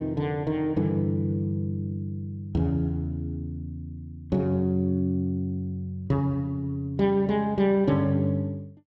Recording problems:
none

